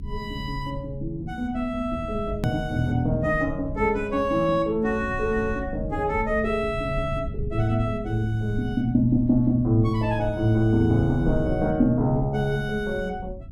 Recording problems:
low-frequency rumble; below 110 Hz, SNR 12 dB
hard cut with a click; at 2.5 s

